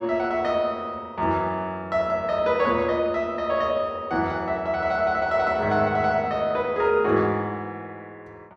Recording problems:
none

